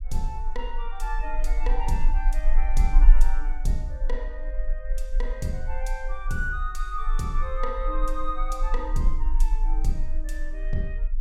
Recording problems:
rumble; below 36 Hz, strongest tone 18 Hz, SNR -5 dB

